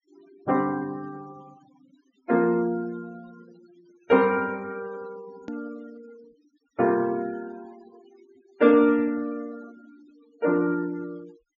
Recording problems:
low-pass filter; nothing above 7.1 kHz
denoising artefacts; signal-to-artefact ratio 26 dB
click at an edit; at 5.5 s

